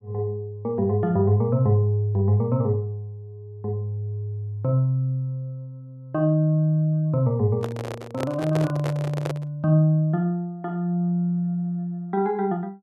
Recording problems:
microphone handling noise; from 7.5 to 9.5 s; peak -2 dB vs average level

